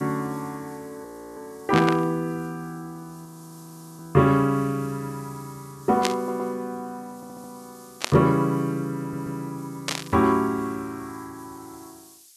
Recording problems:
hiss; SNR 24 dB
frozen audio; at 1 s and at 3.5 s for 0.5 s
static burst; 4 times, first at 1.5 s; peak +4 dB vs average level
audio stuttering; at 6 s, at 7 s and at 9 s

